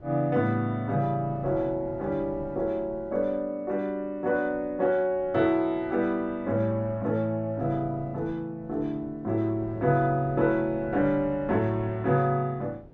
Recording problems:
wind noise; below 400 Hz, SNR 20 dB

